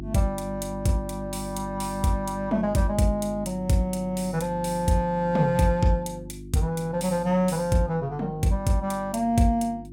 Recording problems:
electrical hum; 50 Hz, harmonics up to 350 Hz, SNR 13 dB

